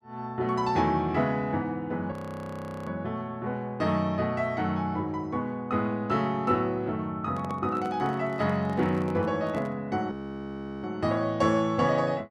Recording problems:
frozen audio; at 2 s for 1 s and at 10 s for 0.5 s
microphone handling noise; from 7.5 to 10 s; peak -9 dB vs average level

